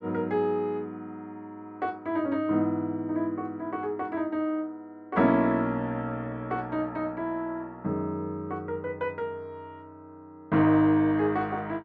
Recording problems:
none

